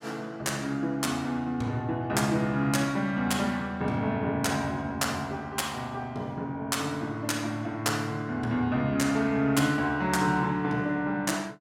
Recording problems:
none

